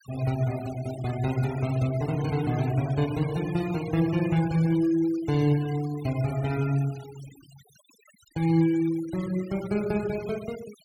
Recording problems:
noise reduction artefacts; signal-to-artefact ratio 18 dB

